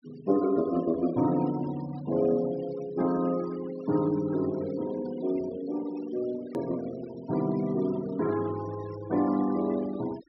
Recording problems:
low-pass filter; nothing above 5.7 kHz
noise reduction artefacts; signal-to-artefact ratio 19 dB
hard cut with a click; at 6.5 s

